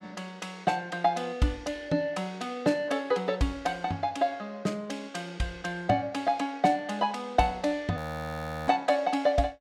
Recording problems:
frozen audio; at 8 s for 0.5 s

